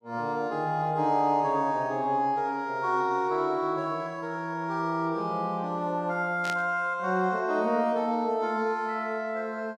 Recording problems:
burst of static; at 6.5 s; peak -4 dB vs average level

